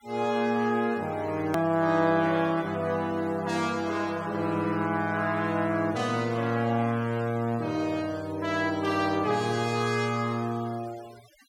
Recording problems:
noise reduction artefacts; signal-to-artefact ratio 21 dB
click at an edit; at 1.5 s

